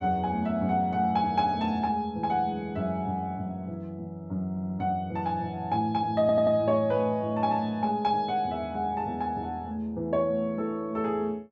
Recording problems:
stutter; at 4.5 s and at 6 s

